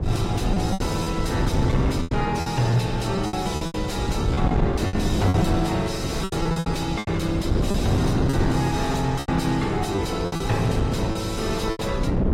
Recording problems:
lossy compression; AAC, log-spectral distance 3 dB, nothing above 14.7 kHz
distorted audio; soft clipping, signal-to-distortion ratio 10 dB
low-frequency rumble; below 130 Hz, SNR 8 dB
wind noise; below 290 Hz, SNR 2 dB
packet loss; 11% of the sound replaced, filled with repeated pitch periods

